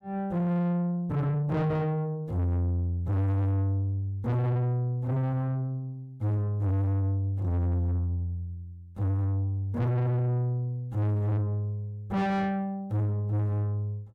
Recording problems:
distortion; soft clipping, signal-to-distortion ratio 7 dB

